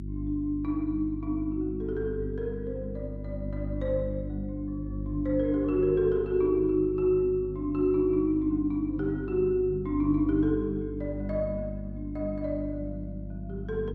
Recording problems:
electrical hum; 50 Hz, harmonics up to 350 Hz, SNR 9 dB

